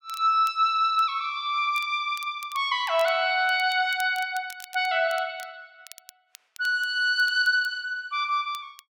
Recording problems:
crackle; vinyl, SNR 23 dB

